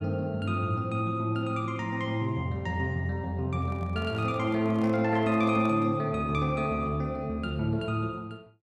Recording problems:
handling noise; from 3.5 to 6 s; peak -12 dB vs average level

